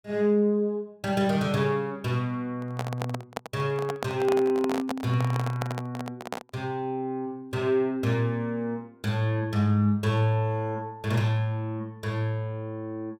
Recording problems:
microphone handling noise; from 2.5 to 6.5 s; peak 0 dB vs average level

